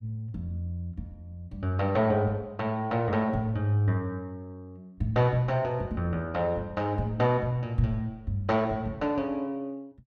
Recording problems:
none

